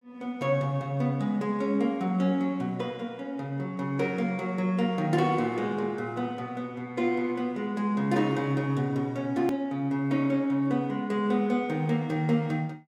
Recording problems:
edit click; at 9.5 s

